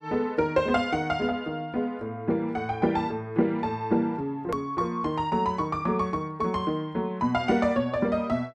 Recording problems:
hard cut with a click; at 4.5 s

